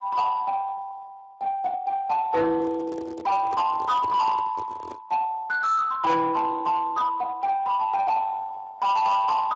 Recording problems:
codec artefacts; Speex, log-spectral distance 2 dB
distortion; soft clipping, signal-to-distortion ratio 10 dB
handling noise; from 2.5 to 5 s; peak -8 dB vs average level

